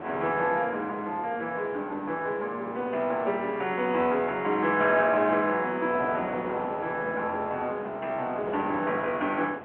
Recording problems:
telephone audio; 260 Hz to 3.4 kHz, G.711
wind on the microphone; below 970 Hz, SNR 12 dB

